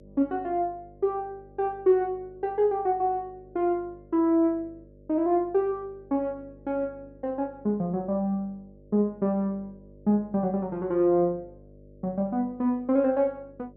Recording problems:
mains hum; 50 Hz, harmonics up to 600 Hz, SNR 25 dB

